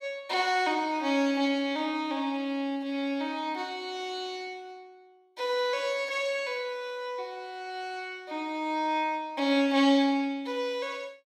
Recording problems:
none

